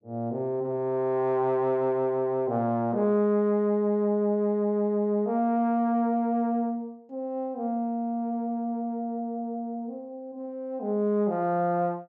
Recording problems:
none

